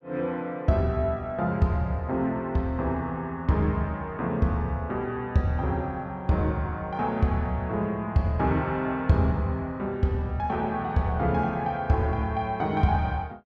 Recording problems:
none

